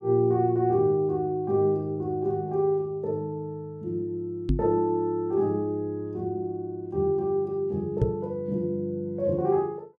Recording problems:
microphone thump; at 4.5 s and at 8 s; peak +6 dB vs average level

